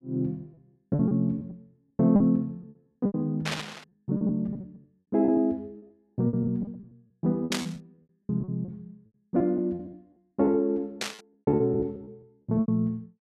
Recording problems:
lost packets; 14% of the sound replaced, filled with repeated pitch periods
burst of static; at 3.5 s, at 7.5 s and at 11 s; peak +3 dB vs average level

